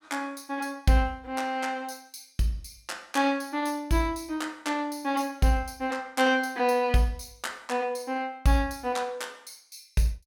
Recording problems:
none

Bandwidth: 17.5 kHz